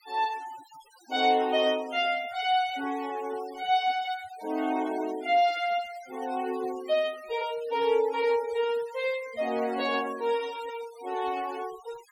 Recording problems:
denoising artefacts; signal-to-artefact ratio 19 dB

